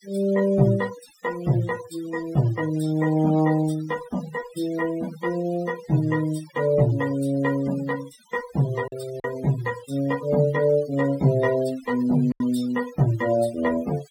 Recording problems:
noise reduction artefacts; signal-to-artefact ratio 19 dB
lost packets; 1.2% of the sound replaced, filled with silence

